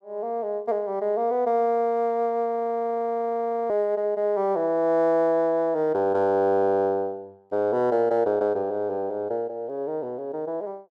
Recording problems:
frozen audio; at 2.5 s for 1 s

